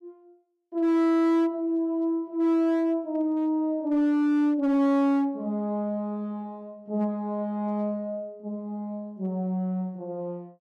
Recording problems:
distortion; hard clipping, uneven, signal-to-distortion ratio 11 dB

